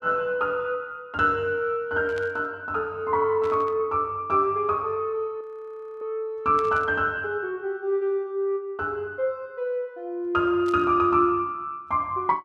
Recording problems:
static burst; 4 times, first at 2 s; peak -13 dB vs average level
frozen audio; at 5.5 s for 0.5 s

